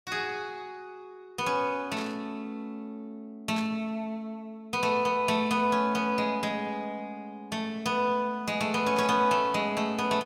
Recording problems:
burst of static; 4 times, first at 2 s; peak -8 dB vs average level

